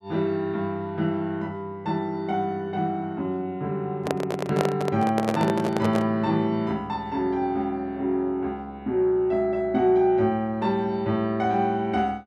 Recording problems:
microphone handling noise; from 4 to 6 s; peak +4 dB vs average level

